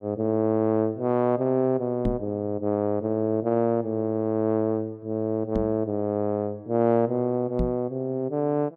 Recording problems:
microphone bump; at 2 s, at 5.5 s and at 7.5 s; peak +2 dB vs average level

